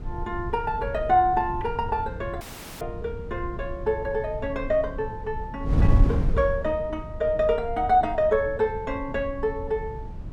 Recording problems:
wind on the microphone; below 100 Hz, SNR 6 dB
audio cutting out; at 2.5 s

